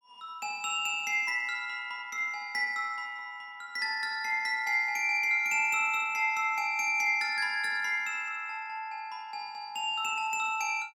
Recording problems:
none

